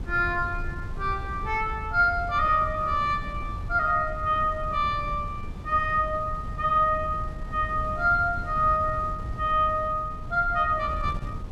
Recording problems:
wind noise; below 120 Hz, SNR 11 dB

